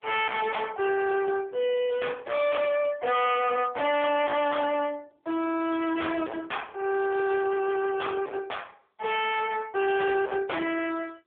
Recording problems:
phone line; 300 Hz to 3.4 kHz, AMR-NB
distortion; hard clipping, signal-to-distortion ratio 5 dB

